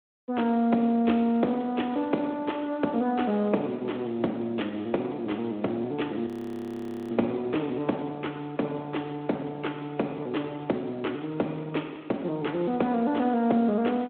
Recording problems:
phone line; 170 Hz to 3.6 kHz, Speex
frozen audio; at 6.5 s for 1 s

